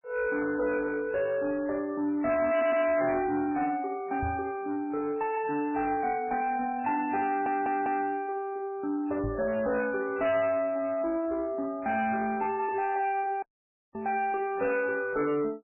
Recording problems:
lossy codec; MP3, log-spectral distance 2 dB, nothing above 2.4 kHz
distorted audio; soft clipping, signal-to-distortion ratio 10 dB
stutter; at 2.5 s and at 7.5 s
microphone thump; at 4 s, at 9 s and at 14 s; peak -2 dB vs average level
audio cutting out; at 13 s for 0.5 s

